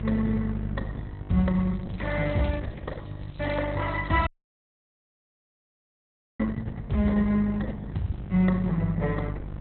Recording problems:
lossy codec; Opus, log-spectral distance 5 dB, nothing above 4 kHz
hum; 50 Hz, harmonics up to 700 Hz, SNR 8 dB
crackle; from 1.5 to 4.5 s; loose cable, SNR 27 dB
dropout; at 4.5 s for 2 s

